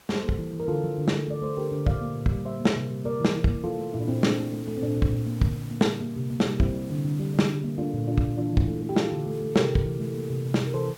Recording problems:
hiss; slope -2 dB per octave, SNR 24 dB

